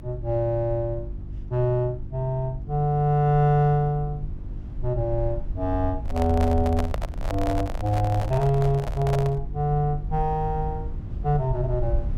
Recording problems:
electrical hum; 50 Hz, harmonics up to 350 Hz, SNR 15 dB
rumble; below 66 Hz, SNR 11 dB
handling noise; from 6 to 9.5 s; peak -2 dB vs average level

